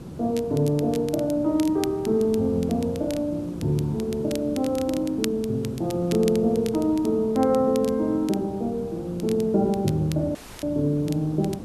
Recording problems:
background hiss; SNR 14 dB
crackle; vinyl, SNR 18 dB
dropout; at 10 s

